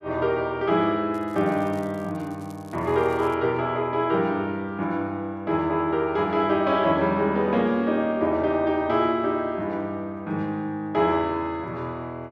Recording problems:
crackling; from 1 to 3.5 s; loose cable, SNR 30 dB

